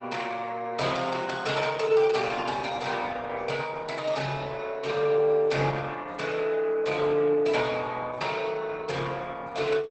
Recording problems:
codec artefacts; Opus, log-spectral distance 4 dB, nothing above 8.2 kHz

